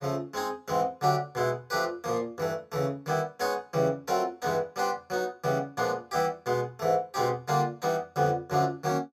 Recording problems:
none

